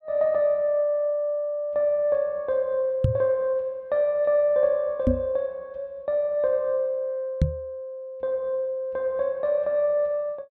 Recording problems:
knock on the microphone; at 3 s, at 5 s and at 7.5 s; peak +7 dB vs average level

